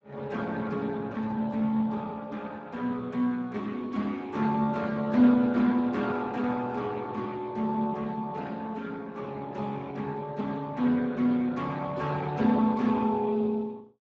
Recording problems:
codec artefacts; Speex, log-spectral distance 3 dB

